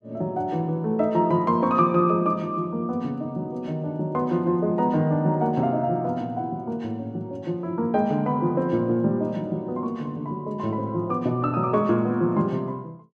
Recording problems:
none

